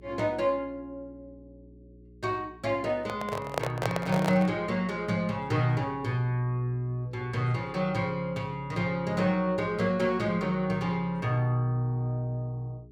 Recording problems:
electrical hum; 60 Hz, harmonics up to 420 Hz, SNR 23 dB
handling noise; from 3 to 4.5 s; peak +4 dB vs average level

